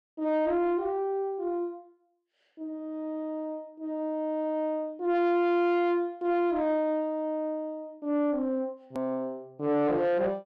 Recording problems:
distorted audio; soft clipping, signal-to-distortion ratio 11 dB
edit click; at 9 s

